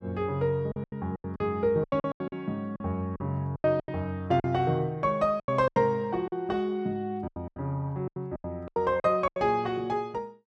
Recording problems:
packet loss; 14% of the sound replaced, filled with silence

